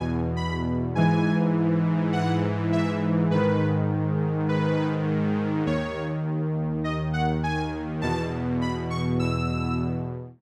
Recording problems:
none

